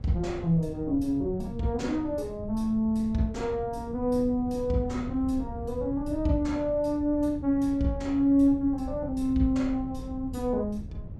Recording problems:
wind on the microphone; below 130 Hz, SNR 13 dB

